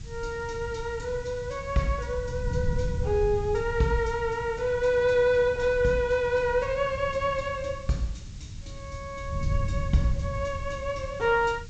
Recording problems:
treble missing; nothing above 8 kHz
hiss; slope +2 dB per octave, SNR 24 dB
wind noise; below 120 Hz, SNR 9 dB

